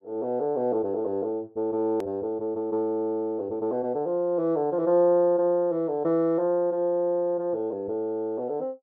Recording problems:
edit click; at 2 s

